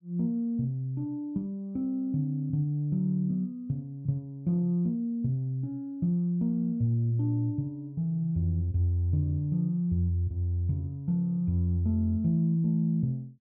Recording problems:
none

